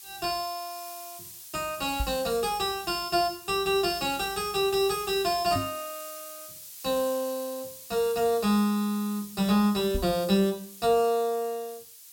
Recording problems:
background hiss; SNR 14 dB
microphone bump; at 2 s, at 5.5 s and at 10 s; peak -1 dB vs average level

